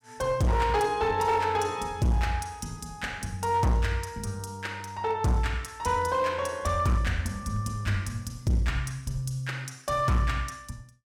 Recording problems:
distorted audio; hard clipping, signal-to-distortion ratio 11 dB

